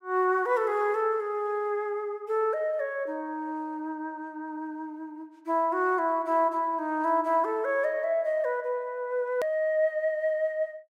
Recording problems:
hard cut with a click; at 9.5 s

